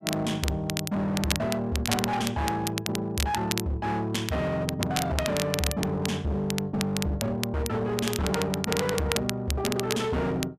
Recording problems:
distortion; hard clipping, uneven, signal-to-distortion ratio 6 dB
crackling; vinyl, SNR 5 dB

